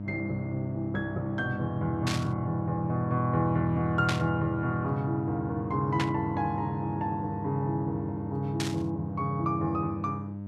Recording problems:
hum; 50 Hz, harmonics up to 900 Hz, SNR 7 dB
burst of static; 4 times, first at 2 s; peak +2 dB vs average level

